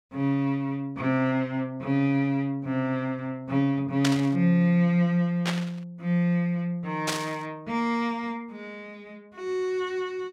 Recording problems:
static burst; at 4 s, at 5.5 s and at 7 s; peak +3 dB vs average level

